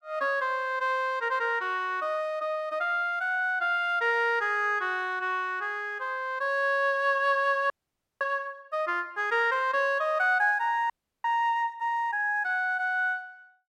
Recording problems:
audio freezing; at 7.5 s for 0.5 s and at 11 s

